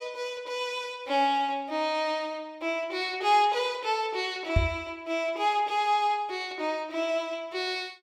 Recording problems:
microphone bump; at 4.5 s; peak +7 dB vs average level

